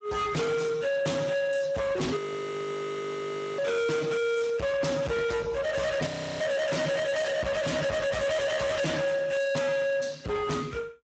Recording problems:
lossy codec; Speex, log-spectral distance 4 dB, nothing above 7.8 kHz
distortion; soft clipping, signal-to-distortion ratio 6 dB
audio freezing; at 2 s for 1.5 s and at 6 s

